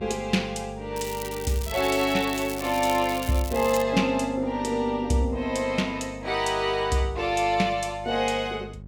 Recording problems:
hum; 50 Hz, harmonics up to 400 Hz, SNR 17 dB
crackling; from 1 to 4 s; loose cable, SNR 13 dB

